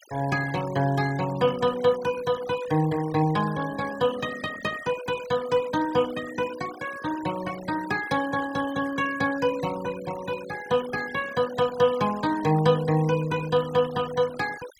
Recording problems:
noise reduction artefacts; signal-to-artefact ratio 16 dB

